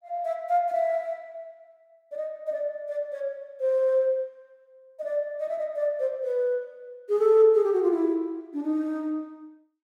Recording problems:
none

